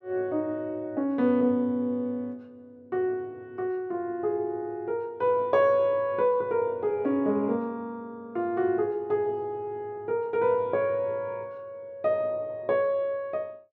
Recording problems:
none

